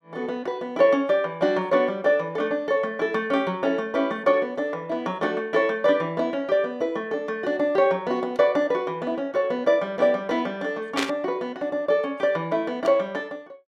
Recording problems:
burst of static; at 11 s; peak +2 dB vs average level

